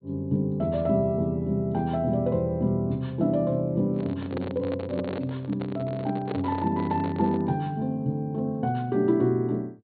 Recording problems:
treble missing; nothing above 4.4 kHz
handling noise; from 4 to 7.5 s; peak -3 dB vs average level

